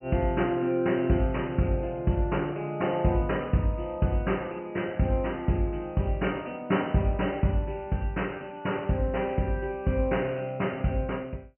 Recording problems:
low-pass filter; nothing above 3 kHz

